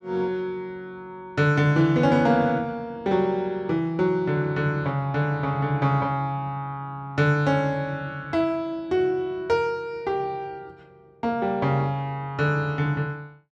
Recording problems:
none

